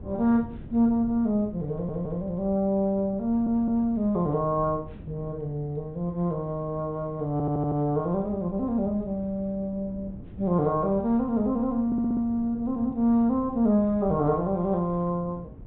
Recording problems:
low-pass filter; nothing above 4 kHz
wind noise; below 220 Hz, SNR 18 dB
audio stuttering; 4 times, first at 1.5 s

